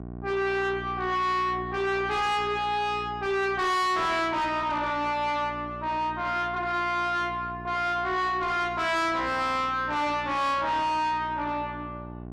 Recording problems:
distorted audio; soft clipping, signal-to-distortion ratio 6 dB
electrical hum; 60 Hz, harmonics up to 2.3 kHz, SNR 15 dB

